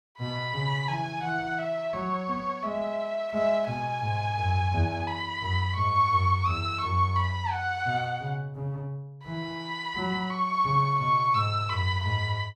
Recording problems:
none

